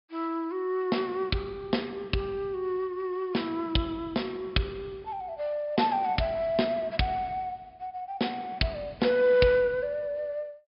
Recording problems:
treble missing; nothing above 5.5 kHz

